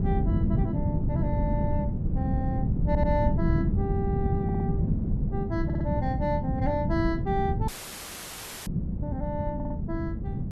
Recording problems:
wind noise; below 190 Hz, SNR -4 dB
audio stuttering; 4 times, first at 3 s
audio cutting out; at 7.5 s for 1 s; filled with static

